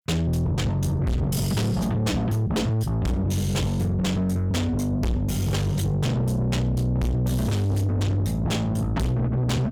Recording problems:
distortion; soft clipping, signal-to-distortion ratio 6 dB

